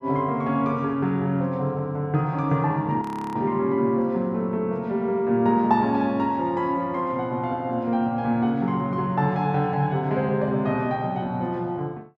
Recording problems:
audio freezing; at 3 s

